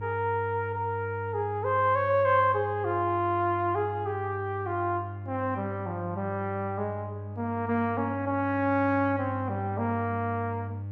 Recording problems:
hum; 50 Hz, harmonics up to 600 Hz, SNR 9 dB

